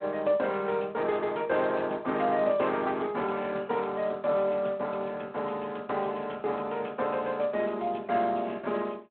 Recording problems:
phone line; 240 Hz to 3.9 kHz, Speex

